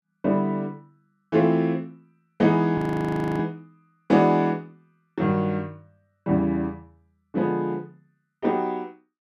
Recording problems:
frozen audio; at 3 s for 0.5 s

